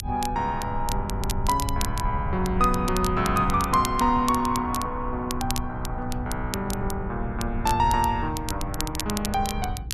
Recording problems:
low-frequency rumble; below 100 Hz, SNR 7 dB
crackling; vinyl, SNR 10 dB

